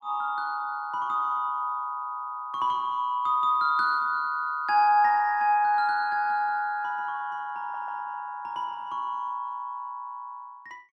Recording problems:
audio stuttering; at 7.5 s

